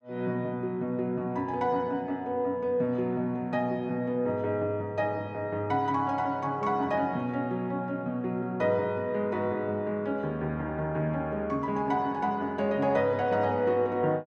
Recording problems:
none

